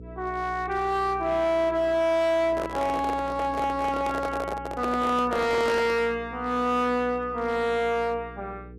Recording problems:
distorted audio; hard clipping, signal-to-distortion ratio 10 dB
hum; 60 Hz, harmonics up to 480 Hz, SNR 18 dB
handling noise; from 2.5 to 6 s; peak -1 dB vs average level

